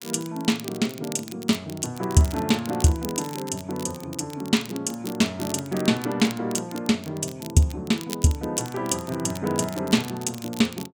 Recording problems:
crackle; vinyl, SNR 15 dB

